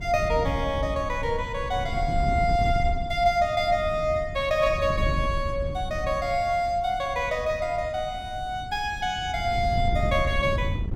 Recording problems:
wind noise; below 130 Hz, SNR 7 dB

